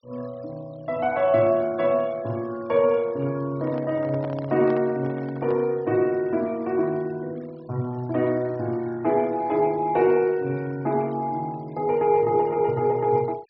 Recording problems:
treble missing; nothing above 5.6 kHz
denoising artefacts; signal-to-artefact ratio 27 dB
handling noise; from 3.5 to 5.5 s; peak -10 dB vs average level

